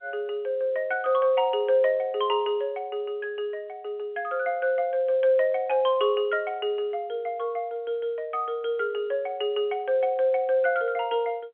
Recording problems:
telephone audio; 220 Hz to 3.3 kHz, G.711

